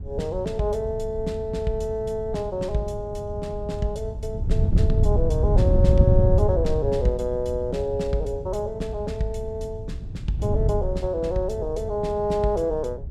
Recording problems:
wind on the microphone; below 110 Hz, SNR 1 dB

